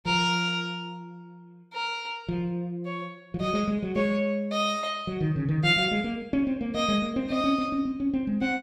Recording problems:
none

